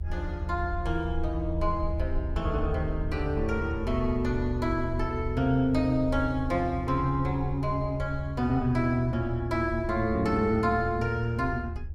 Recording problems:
low-frequency rumble; below 78 Hz, SNR 7 dB

